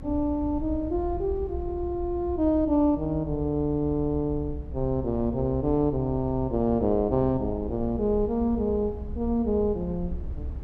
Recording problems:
low-frequency rumble; below 70 Hz, SNR 11 dB

